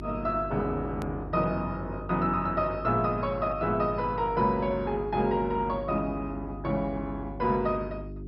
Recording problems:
lossy compression; MP2, log-spectral distance 2 dB, nothing above 13.1 kHz
mains hum; 50 Hz, harmonics up to 400 Hz, SNR 11 dB
edit click; at 1 s

